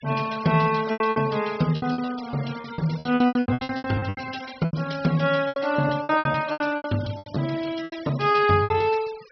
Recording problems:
treble cut off; nothing above 5.5 kHz
denoising artefacts; signal-to-artefact ratio 18 dB
lost packets; 20% of the sound replaced, filled with repeated pitch periods

